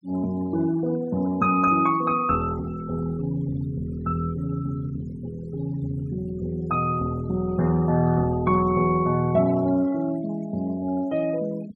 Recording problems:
noise reduction artefacts; signal-to-artefact ratio 22 dB

